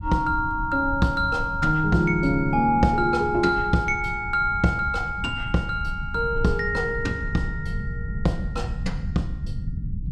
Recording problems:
low-frequency rumble; below 130 Hz, SNR 10 dB

